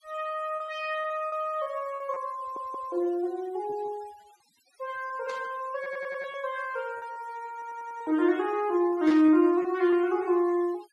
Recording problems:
denoising artefacts; signal-to-artefact ratio 25 dB
lost packets; 6% of the sound replaced, filled with repeated pitch periods
audio stuttering; at 2.5 s, at 6 s and at 7.5 s
static burst; at 5.5 s and at 9 s; peak -10 dB vs average level

